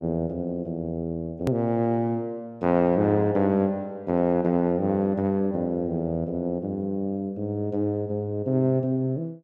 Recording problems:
edit click; at 1.5 s

